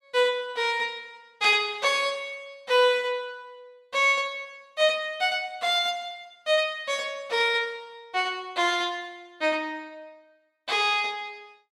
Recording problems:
none

